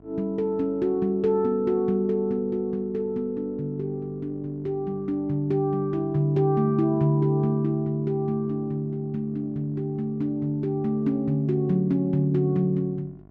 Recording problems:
electrical hum; 50 Hz, harmonics up to 1.1 kHz, SNR 26 dB

